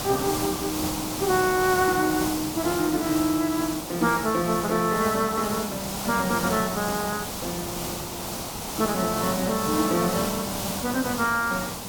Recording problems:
hiss; SNR 4 dB

